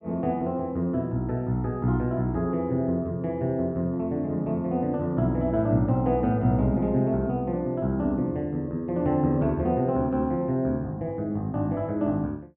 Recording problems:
none

